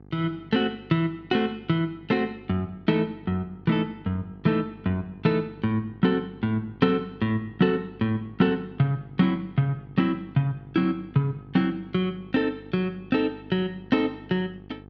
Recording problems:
electrical hum; 50 Hz, harmonics up to 900 Hz, SNR 21 dB

